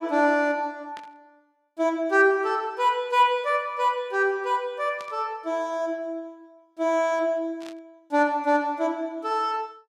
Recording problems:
static burst; at 1 s, at 5 s and at 7.5 s; peak -15 dB vs average level

